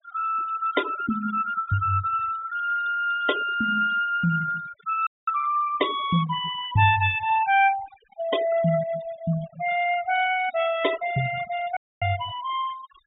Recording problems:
treble cut off; nothing above 4 kHz
noise reduction artefacts; signal-to-artefact ratio 15 dB
dropout; at 5 s and at 12 s

